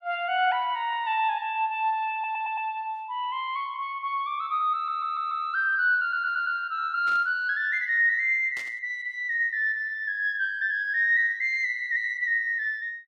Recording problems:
stutter; at 2 s, at 4.5 s and at 6 s
burst of static; at 7 s and at 8.5 s; peak -13 dB vs average level

